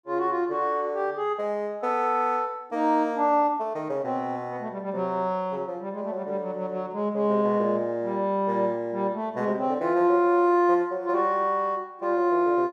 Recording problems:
none

